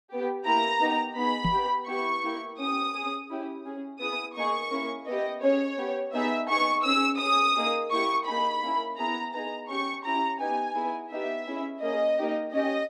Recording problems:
microphone bump; at 1.5 s; peak +2 dB vs average level

